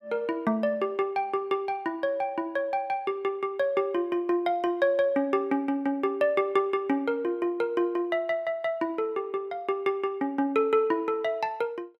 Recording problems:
none

